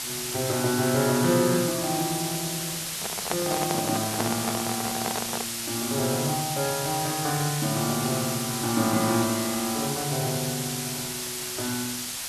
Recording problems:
background hiss; slope +2 dB per octave, SNR 2 dB
microphone handling noise; from 3 to 5.5 s; peak +3 dB vs average level

